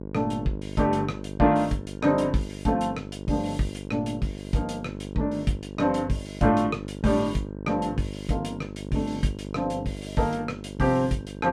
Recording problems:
hum; 50 Hz, harmonics up to 1.1 kHz, SNR 10 dB

